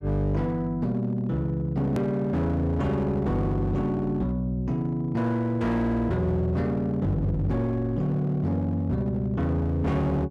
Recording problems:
distortion; hard clipping, signal-to-distortion ratio 11 dB
hard cut with a click; at 2 s

